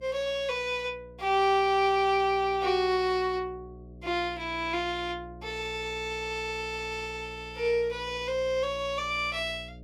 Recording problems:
electrical hum; 60 Hz, harmonics up to 660 Hz, SNR 19 dB

